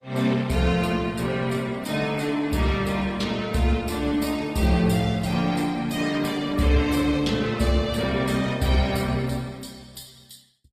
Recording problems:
codec artefacts; Opus, log-spectral distance 4 dB, nothing above 14.7 kHz

